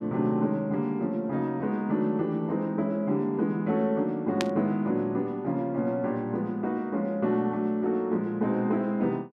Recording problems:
burst of static; at 4.5 s; peak +1 dB vs average level

